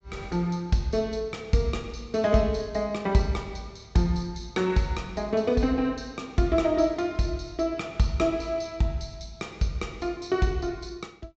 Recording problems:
low-pass filter; nothing above 8 kHz

